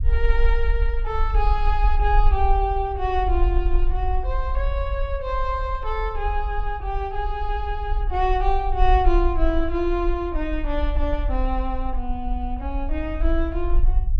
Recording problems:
low-frequency rumble; below 48 Hz, SNR 0 dB

